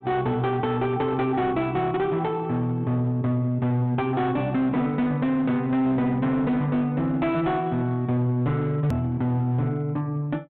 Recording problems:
treble cut off; nothing above 4 kHz
distortion; hard clipping, signal-to-distortion ratio 11 dB
click at an edit; at 9 s

